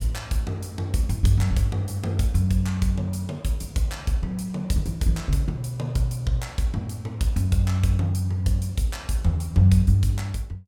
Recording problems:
none

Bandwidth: 17 kHz